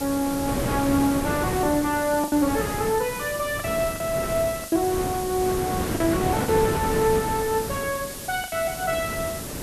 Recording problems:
hiss; slope +5 dB per octave, SNR 10 dB
wind noise; below 610 Hz, SNR 6 dB
lost packets; 4% of the sound replaced, filled with the last packet

